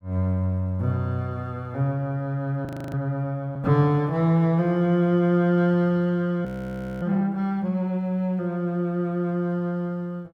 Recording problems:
frozen audio; at 2.5 s and at 6.5 s for 0.5 s

